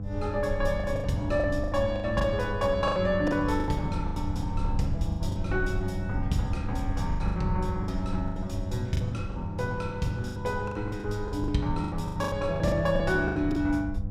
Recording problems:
hum; 50 Hz, harmonics up to 800 Hz, SNR 9 dB
rumble; below 76 Hz, SNR 7 dB
lost packets; 14% of the sound replaced, filled with the last packet

